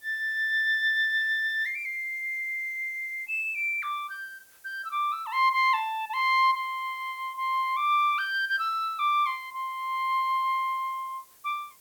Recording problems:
hiss; SNR 27 dB

